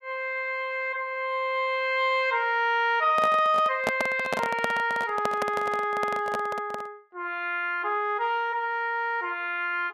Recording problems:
microphone handling noise; from 3 to 7 s; peak +3 dB vs average level

